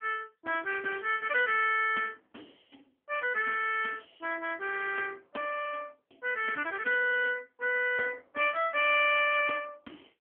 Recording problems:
telephone audio; 260 Hz to 3.1 kHz, AMR-NB

